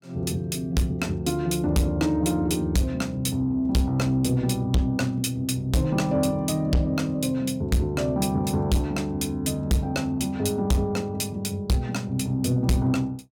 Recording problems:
distorted audio; soft clipping, signal-to-distortion ratio 7 dB

